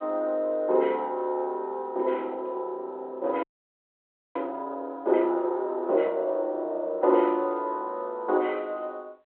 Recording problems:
telephone audio; 340 Hz to 3.1 kHz, G.726
audio freezing; at 3.5 s for 1 s

